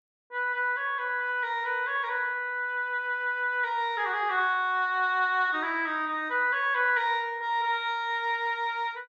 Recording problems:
none

